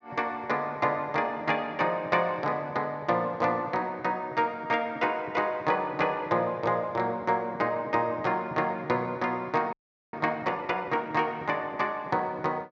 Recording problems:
audio freezing; at 9.5 s

